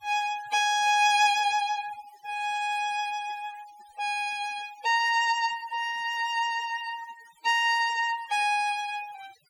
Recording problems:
noise reduction artefacts; signal-to-artefact ratio 19 dB

